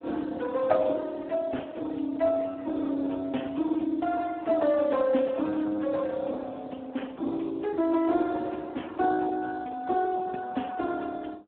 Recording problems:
phone line; 190 Hz to 3.4 kHz, Speex

